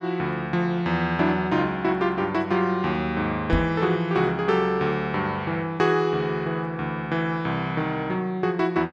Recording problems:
knock on the microphone; at 3.5 s; peak +4 dB vs average level

